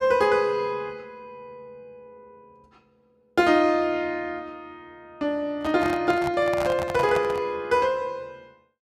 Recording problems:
handling noise; from 5.5 to 7.5 s; peak -3 dB vs average level

